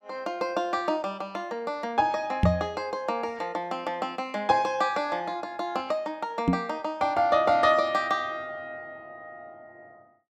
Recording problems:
microphone bump; at 2.5 s and at 6.5 s; peak +9 dB vs average level

